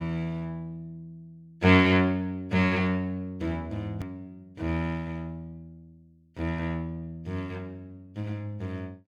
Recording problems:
hard cut with a click; at 4 s

